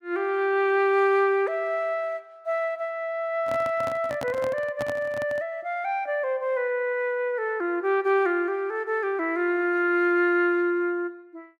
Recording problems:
microphone handling noise; from 3.5 to 5.5 s; peak -3 dB vs average level

